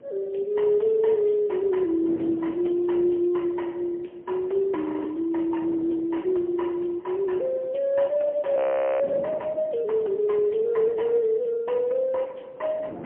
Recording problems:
phone line; 190 Hz to 3.1 kHz, AMR-NB, then MP3
wind noise; below 530 Hz, SNR 21 dB
frozen audio; at 5 s and at 8.5 s

